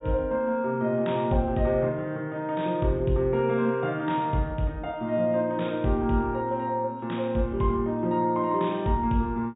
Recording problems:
treble missing; nothing above 4 kHz

